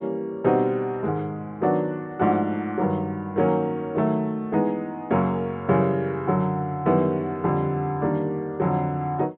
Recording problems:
treble missing; nothing above 4 kHz

